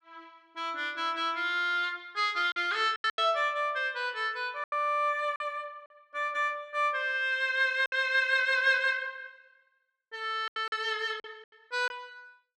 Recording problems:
lost packets; 5% of the sound replaced, filled with silence

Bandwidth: 12.5 kHz